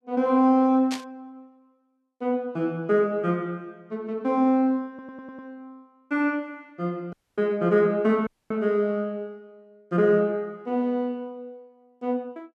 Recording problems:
burst of static; at 1 s; peak -4 dB vs average level
stutter; at 5 s
audio cutting out; at 7 s and at 8.5 s

